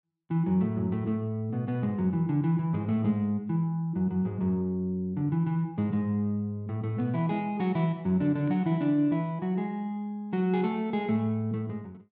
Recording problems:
none

